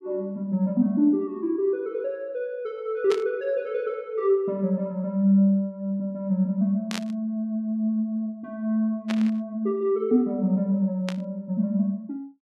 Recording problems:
static burst; 4 times, first at 3 s; peak -3 dB vs average level

